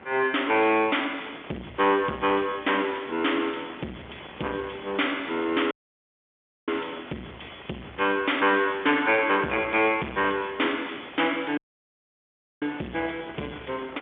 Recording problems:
telephone audio; 190 Hz to 3.4 kHz, G.711
distorted audio; soft clipping, signal-to-distortion ratio 12 dB
wind on the microphone; below 1.8 kHz, SNR 19 dB
dropout; at 5.5 s for 1 s and at 12 s for 1 s

